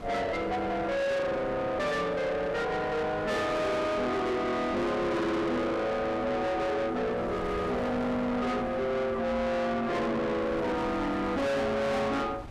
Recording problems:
distortion; soft clipping, signal-to-distortion ratio 6 dB
wind noise; below 970 Hz, SNR 14 dB

